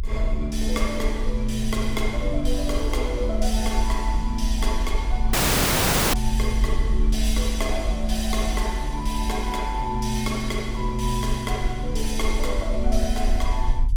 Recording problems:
low-frequency rumble; below 48 Hz, SNR 1 dB
audio cutting out; at 5.5 s for 1 s

